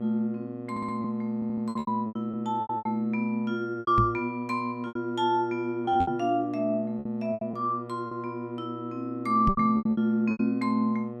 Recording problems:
mains hum; 60 Hz, harmonics up to 1.3 kHz, SNR 11 dB
packet loss; 11% of the sound replaced, filled with repeated pitch periods
audio stuttering; at 0.5 s and at 1.5 s
microphone bump; at 4 s, at 6 s and at 9.5 s; peak +5 dB vs average level

